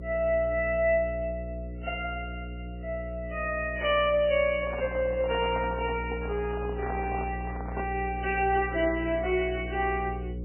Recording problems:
lossy codec; MP3, log-spectral distance 4 dB, nothing above 3 kHz
hum; 60 Hz, harmonics up to 540 Hz, SNR 9 dB
microphone handling noise; from 4.5 to 8 s; peak -5 dB vs average level

